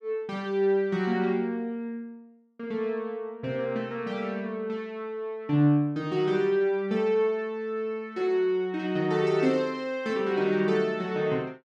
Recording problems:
none

